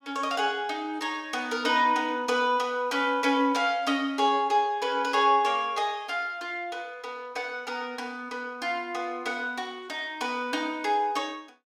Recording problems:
none

